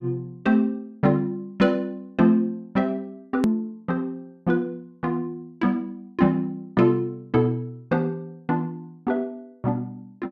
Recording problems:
hard cut with a click; at 3.5 s

